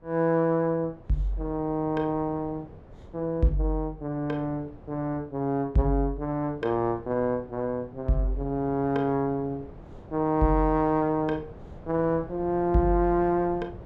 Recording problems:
wind on the microphone; below 430 Hz, SNR 20 dB

